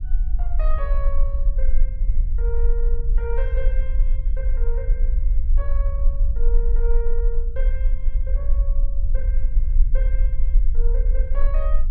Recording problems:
low-frequency rumble; below 40 Hz, strongest tone 18 Hz, SNR -13 dB

